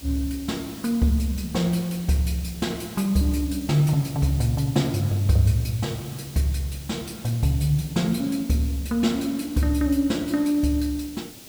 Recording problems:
background hiss; SNR 17 dB

